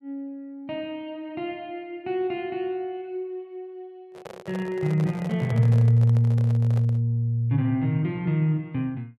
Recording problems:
microphone handling noise; from 4 to 7 s; peak -8 dB vs average level

